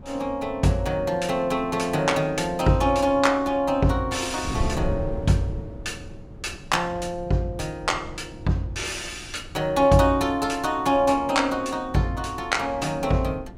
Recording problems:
wind on the microphone; below 190 Hz, SNR 15 dB

